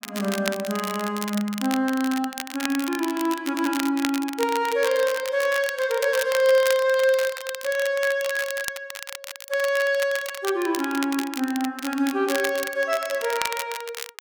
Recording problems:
crackling; vinyl, SNR 10 dB

